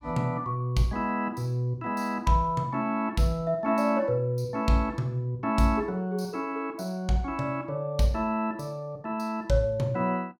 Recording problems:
none

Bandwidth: 17.5 kHz